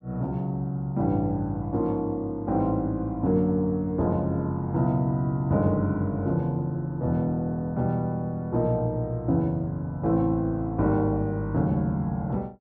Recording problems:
none

